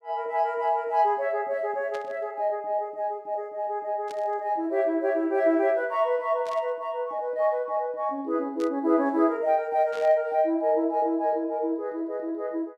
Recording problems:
burst of static; 5 times, first at 2 s; peak -13 dB vs average level

